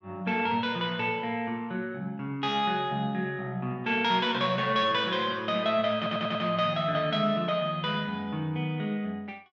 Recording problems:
stutter; at 6 s

